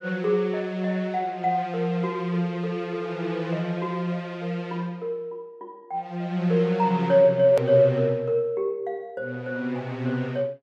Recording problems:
hard cut with a click; at 7.5 s

